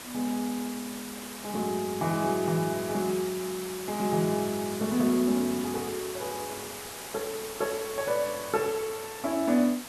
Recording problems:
hiss; slope -2 dB per octave, SNR 9 dB

